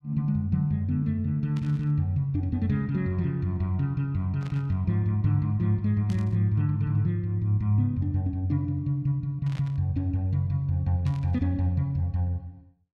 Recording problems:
static burst; 5 times, first at 1.5 s; peak -15 dB vs average level

